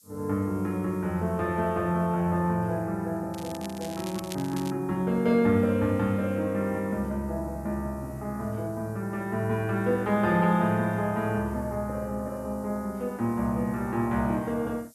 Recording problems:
background hiss; SNR 27 dB
crackle; from 3.5 to 4.5 s; loose cable, SNR 15 dB

